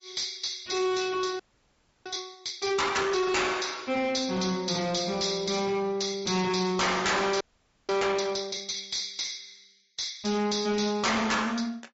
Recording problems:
low-pass filter; nothing above 6.7 kHz
lossy compression; MP3, log-spectral distance 8 dB
distortion; soft clipping, signal-to-distortion ratio 6 dB
frozen audio; at 1.5 s for 0.5 s and at 7.5 s

